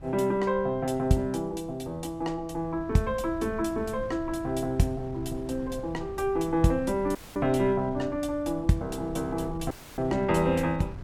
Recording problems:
wind noise; below 150 Hz, SNR 16 dB
audio cutting out; at 7 s and at 9.5 s

